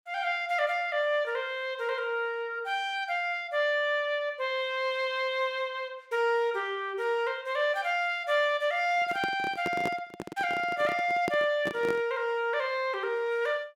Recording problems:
handling noise; from 9 to 12 s; peak 0 dB vs average level

